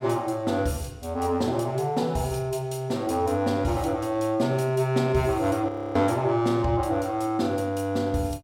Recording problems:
frozen audio; at 5.5 s

